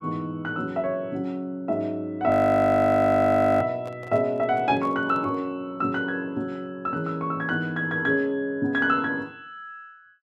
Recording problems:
audio freezing; at 2.5 s for 1.5 s
handling noise; from 4 to 5.5 s; peak -13 dB vs average level

